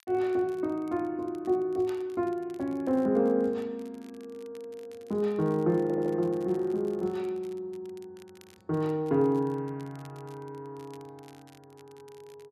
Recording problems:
crackle; vinyl, SNR 30 dB
audio stuttering; at 6 s

